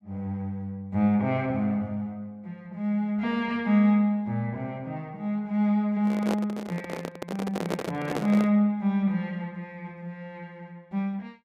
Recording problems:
microphone handling noise; from 6 to 8.5 s; peak +1 dB vs average level

